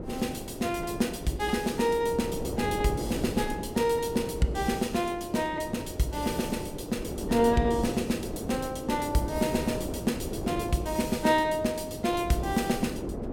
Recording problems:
wind noise; below 450 Hz, SNR 7 dB

